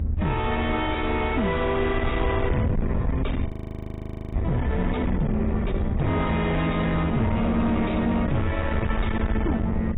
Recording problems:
codec artefacts; AAC, log-spectral distance 2 dB, nothing above 3.8 kHz
distorted audio; soft clipping, signal-to-distortion ratio 7 dB
electrical hum; 60 Hz, harmonics up to 1.3 kHz, SNR 20 dB
low-frequency rumble; below 140 Hz, SNR 5 dB
wind noise; below 230 Hz, SNR 6 dB
frozen audio; at 3.5 s for 1 s

